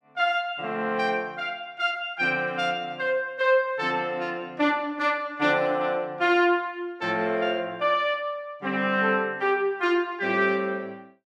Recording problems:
none

